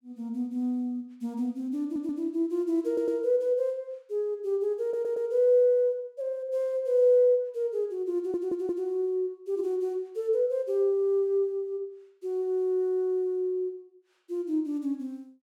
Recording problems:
audio stuttering; 4 times, first at 2 s

